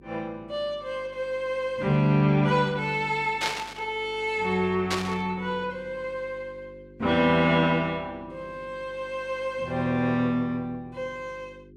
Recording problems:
hum; 50 Hz, harmonics up to 400 Hz, SNR 24 dB
burst of static; at 3.5 s and at 5 s; peak +3 dB vs average level

